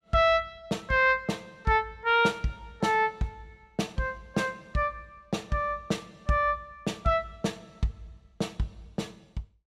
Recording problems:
none

